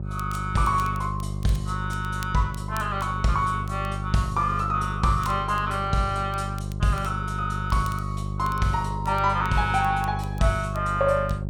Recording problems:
hum; 50 Hz, harmonics up to 600 Hz, SNR 5 dB
crackle; vinyl, SNR 23 dB

